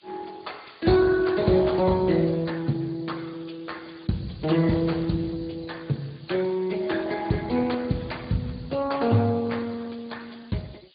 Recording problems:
low-pass filter; nothing above 4.7 kHz
codec artefacts; Speex, log-spectral distance 10 dB
hiss; SNR 27 dB

